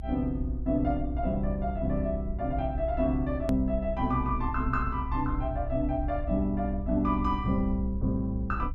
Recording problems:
rumble; below 62 Hz, strongest tone 58 Hz, SNR 6 dB
click at an edit; at 3.5 s

